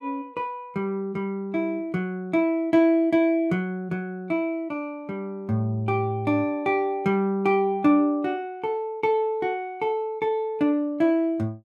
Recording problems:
none

